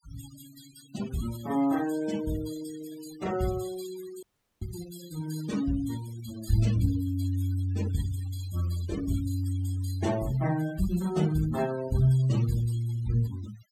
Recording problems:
denoising artefacts; signal-to-artefact ratio 15 dB
dropout; at 4 s

